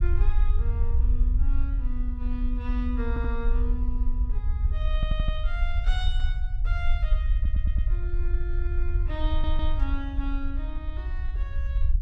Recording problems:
rumble; below 58 Hz, SNR -10 dB
audio stuttering; 4 times, first at 3 s
burst of static; at 10 s; peak -15 dB vs average level

